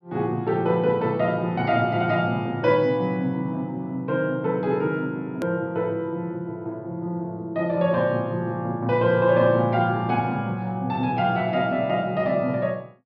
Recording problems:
treble missing; nothing above 5.5 kHz
click at an edit; at 5.5 s

